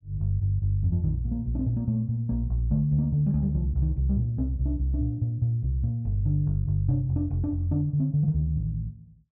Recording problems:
none

